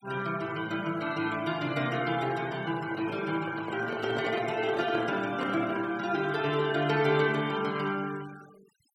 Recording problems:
noise reduction artefacts; signal-to-artefact ratio 19 dB
microphone handling noise; from 2.5 to 6 s; peak -3 dB vs average level

